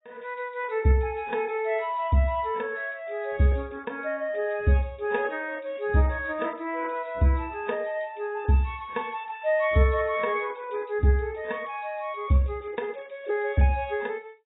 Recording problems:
lossy compression; AAC, log-spectral distance 7 dB, nothing above 3.7 kHz

